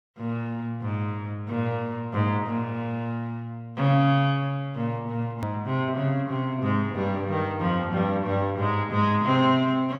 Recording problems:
click at an edit; at 5.5 s

